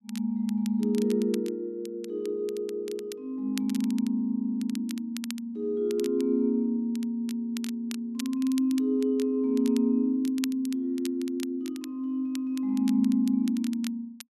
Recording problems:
crackling; vinyl, SNR 18 dB

